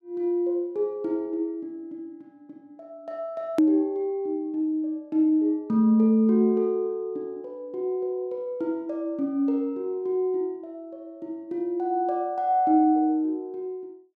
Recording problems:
click at an edit; at 3.5 s

